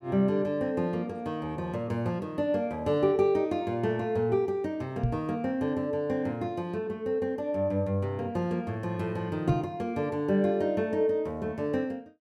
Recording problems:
microphone thump; at 5 s and at 9.5 s; peak +7 dB vs average level

